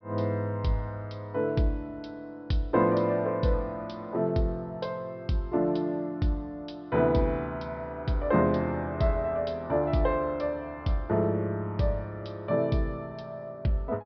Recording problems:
treble missing; nothing above 5.5 kHz

